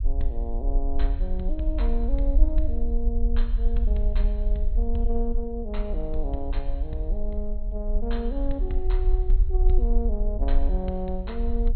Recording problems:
treble cut off; nothing above 4.2 kHz
low-frequency rumble; below 44 Hz, SNR -6 dB

